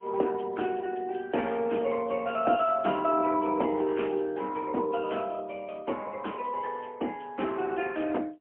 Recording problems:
telephone audio; 220 Hz to 3.3 kHz, AMR-NB, then MP3

